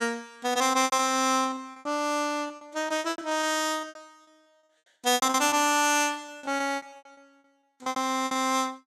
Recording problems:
packet loss; 19% of the sound replaced, filled with repeated pitch periods

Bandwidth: 14 kHz